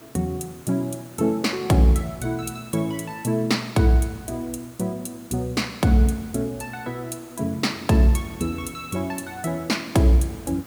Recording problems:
mains hum; 60 Hz, harmonics up to 1.3 kHz, SNR 27 dB
background hiss; SNR 23 dB

